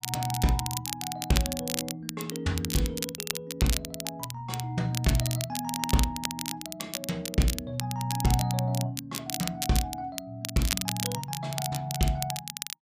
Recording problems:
crackle; vinyl, SNR 3 dB

